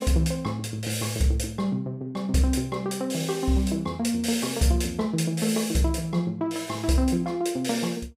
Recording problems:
none

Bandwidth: 15.5 kHz